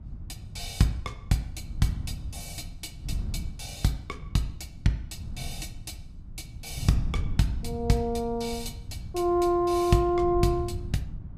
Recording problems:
wind noise; below 120 Hz, SNR 10 dB

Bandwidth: 14.5 kHz